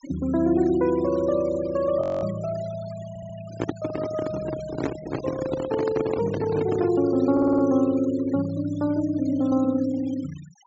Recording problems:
low-pass filter; nothing above 8 kHz
noise reduction artefacts; signal-to-artefact ratio 20 dB
audio freezing; at 2 s
stutter; at 3 s and at 7.5 s
microphone handling noise; from 3.5 to 7 s; peak +1 dB vs average level

